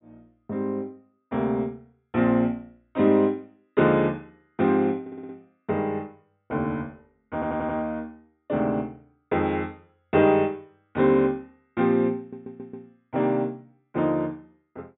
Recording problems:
treble missing; nothing above 4 kHz
audio stuttering; at 5 s, at 7.5 s and at 12 s

